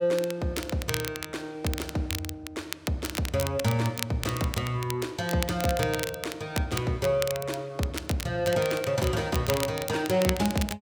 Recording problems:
crackling; vinyl, SNR 8 dB

